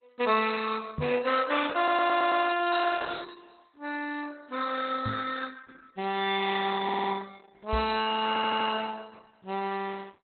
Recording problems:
codec artefacts; Opus, log-spectral distance 7 dB, nothing above 3.9 kHz
microphone bump; at 1 s, at 5 s and at 7.5 s; peak -1 dB vs average level
audio stuttering; at 2 s, at 7 s and at 8.5 s

